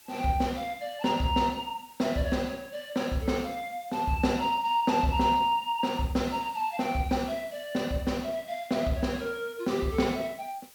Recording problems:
hiss; slope +1 dB per octave, SNR 24 dB

